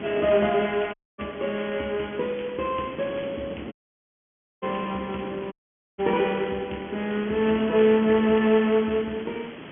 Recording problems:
telephone audio; 240 Hz to 3.5 kHz, G.726
hiss; SNR 22 dB
wind noise; below 510 Hz, SNR 16 dB
audio cutting out; at 1 s, at 3.5 s for 1 s and at 5.5 s

